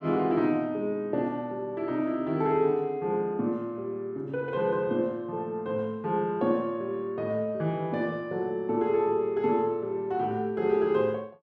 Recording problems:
none

